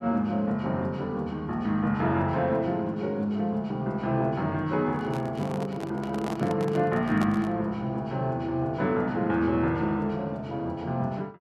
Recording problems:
microphone handling noise; from 5 to 7.5 s; peak -1 dB vs average level

